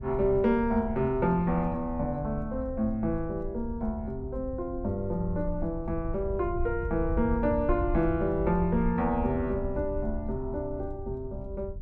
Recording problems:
wind on the microphone; below 82 Hz, SNR 8 dB

